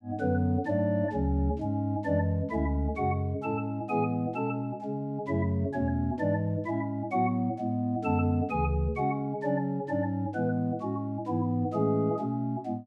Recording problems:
none

